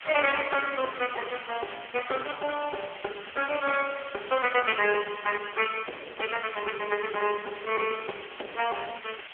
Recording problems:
telephone audio; 340 Hz to 3.3 kHz, AMR-NB
hiss; SNR 13 dB

